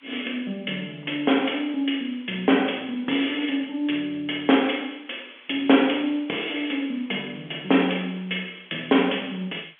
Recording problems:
telephone audio; 220 Hz to 3.4 kHz, G.711
background hiss; SNR 27 dB

